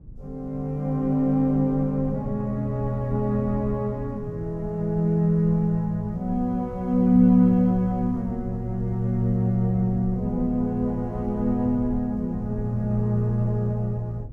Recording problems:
low-frequency rumble; below 100 Hz, SNR 16 dB

